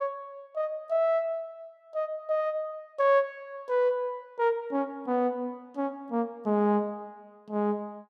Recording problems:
none

